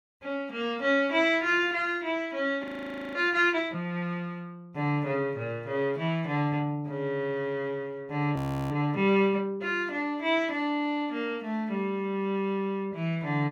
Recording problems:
audio freezing; at 2.5 s for 0.5 s and at 8.5 s

